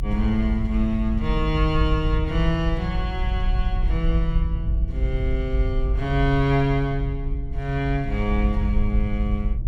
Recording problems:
low-frequency rumble; below 60 Hz, SNR 1 dB

